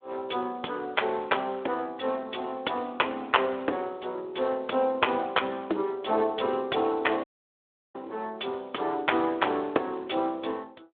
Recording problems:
phone line; 280 Hz to 3.5 kHz, Speex
dropout; at 7 s for 0.5 s

